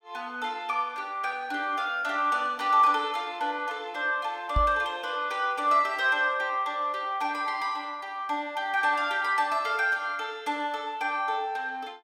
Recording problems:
microphone thump; at 4.5 s; peak +3 dB vs average level

